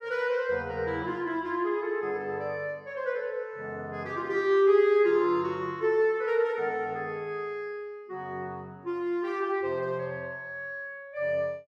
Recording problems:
none

